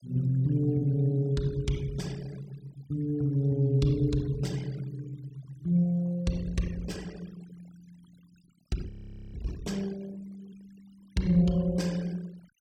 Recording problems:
denoising artefacts; signal-to-artefact ratio 24 dB
frozen audio; at 9 s

